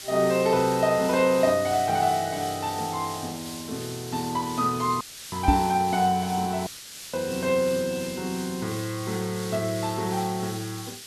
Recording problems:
background hiss; SNR 12 dB
dropout; at 5 s and at 6.5 s
microphone bump; at 5.5 s; peak +8 dB vs average level

